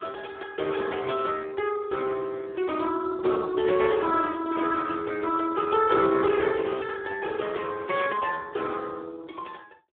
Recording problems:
telephone audio; 280 Hz to 2.2 kHz, Speex

